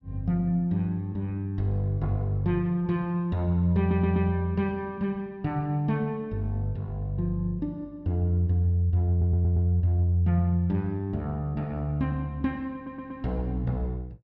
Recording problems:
stutter; at 4 s, at 9 s and at 13 s

